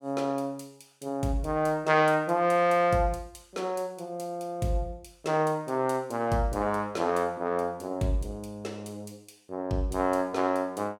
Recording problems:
none

